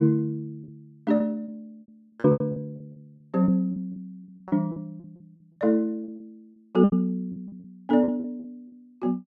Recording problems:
packet loss; 16% of the sound replaced, filled with repeated pitch periods

